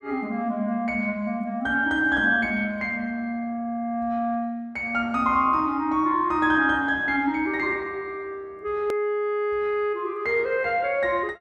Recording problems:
edit click; at 9 s

